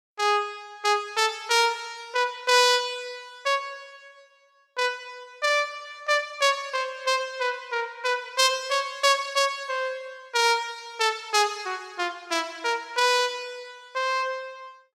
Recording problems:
none

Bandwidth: 16.5 kHz